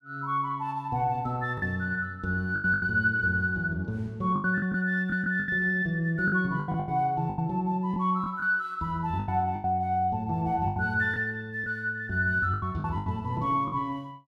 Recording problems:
lost packets; 9% of the sound replaced, filled with the last packet

